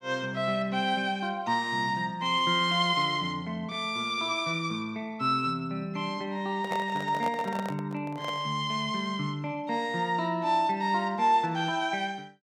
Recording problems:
microphone handling noise; from 6.5 to 8.5 s; peak -2 dB vs average level

